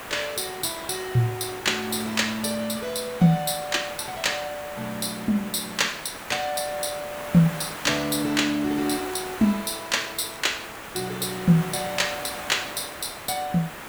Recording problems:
hiss; SNR 10 dB
crackle; from 8.5 to 11 s; loose cable, SNR 27 dB

